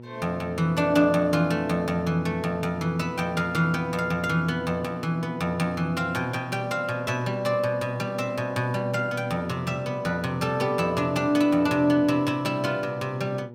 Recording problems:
hum; 60 Hz, harmonics up to 960 Hz, SNR 17 dB

